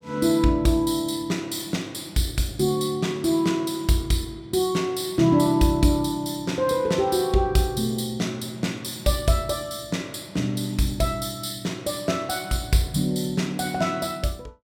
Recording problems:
none

